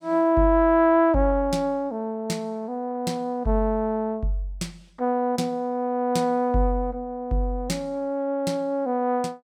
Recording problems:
none

